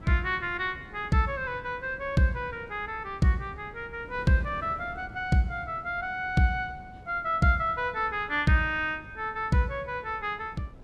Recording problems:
wind noise; below 330 Hz, SNR 20 dB

